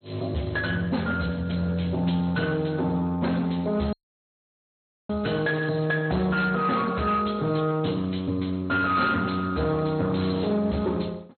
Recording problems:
low-pass filter; nothing above 4.2 kHz
lossy codec; Speex, log-spectral distance 5 dB
distorted audio; hard clipping, uneven, signal-to-distortion ratio 11 dB
audio cutting out; at 4 s for 1 s

